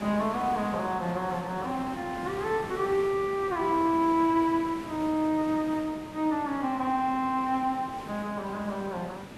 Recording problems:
hiss; slope -6 dB per octave, SNR 13 dB

